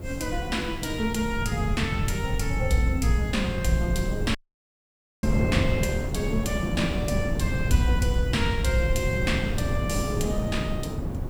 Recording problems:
background hiss; SNR 27 dB
rumble; below 120 Hz, SNR 4 dB
wind noise; below 280 Hz, SNR 4 dB
dropout; at 4.5 s for 1 s

